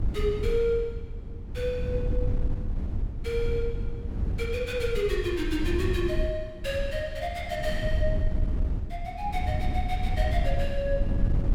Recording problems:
wind on the microphone; below 88 Hz, SNR 1 dB

